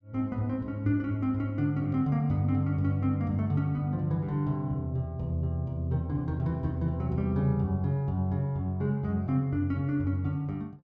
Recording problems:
none

